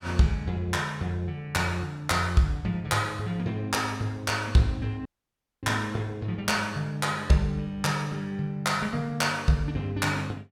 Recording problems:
dropout; at 5 s for 0.5 s

